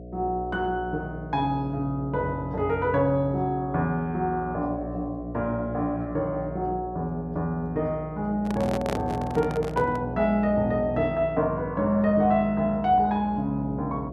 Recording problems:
electrical hum; 60 Hz, harmonics up to 720 Hz, SNR 12 dB
microphone handling noise; from 8.5 to 10 s; peak -1 dB vs average level

